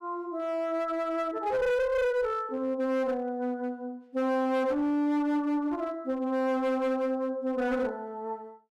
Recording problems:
distorted audio; hard clipping, uneven, signal-to-distortion ratio 10 dB

